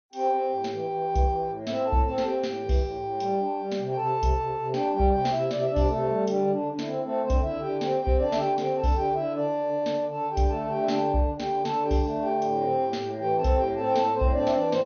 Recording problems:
codec artefacts; MP2, log-spectral distance 2 dB, nothing above 6.3 kHz

